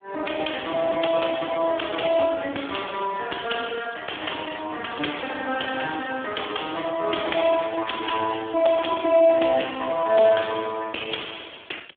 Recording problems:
telephone audio; 240 Hz to 3.4 kHz, Speex

